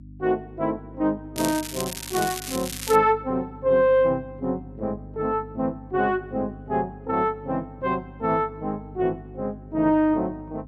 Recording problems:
electrical hum; 50 Hz, harmonics up to 300 Hz, SNR 18 dB
crackle; from 1.5 to 3 s; loose cable, SNR 8 dB

